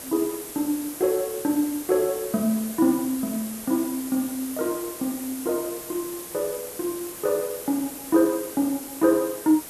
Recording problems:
hiss; SNR 10 dB

